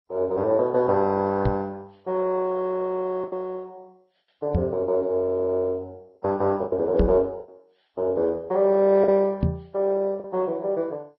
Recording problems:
codec artefacts; Vorbis, then MP2, log-spectral distance 2 dB, nothing above 5.5 kHz
lost packets; 4% of the sound replaced, filled with the last packet
microphone thump; 4 times, first at 1.5 s; peak +5 dB vs average level

